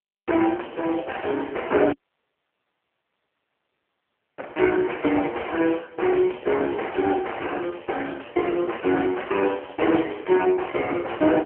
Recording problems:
phone line; 260 Hz to 3.1 kHz, AMR-NB
audio cutting out; at 2 s for 2.5 s

